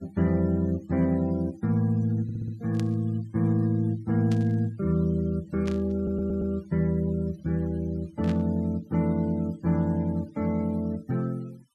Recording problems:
noise reduction artefacts; signal-to-artefact ratio 27 dB
audio stuttering; at 2 s and at 6 s
static burst; 4 times, first at 2.5 s; peak -10 dB vs average level

